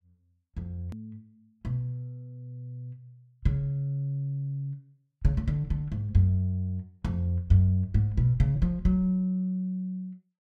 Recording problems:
edit click; at 1 s

